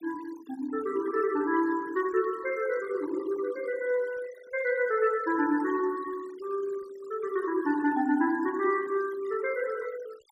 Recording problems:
noise reduction artefacts; signal-to-artefact ratio 19 dB

